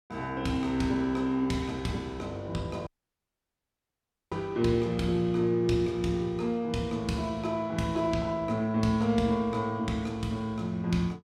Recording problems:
dropout; at 3 s for 1.5 s

